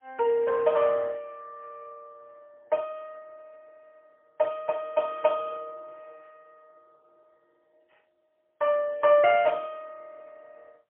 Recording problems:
phone line; 300 Hz to 3.1 kHz, AMR-NB, then MP3

